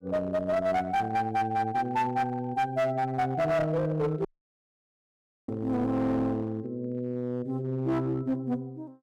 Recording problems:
distorted audio; hard clipping, uneven, signal-to-distortion ratio 11 dB
audio cutting out; at 4.5 s for 1 s

